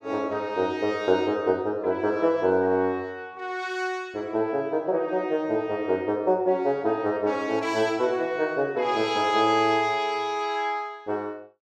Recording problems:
none

